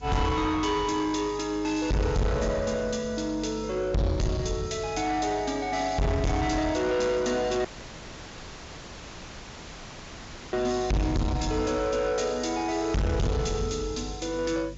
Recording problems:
treble cut off; nothing above 7.4 kHz
distorted audio; soft clipping, signal-to-distortion ratio 6 dB
hum; 50 Hz, harmonics up to 550 Hz, SNR 18 dB
hiss; slope +2 dB per octave, SNR 29 dB
audio cutting out; at 7.5 s for 3 s

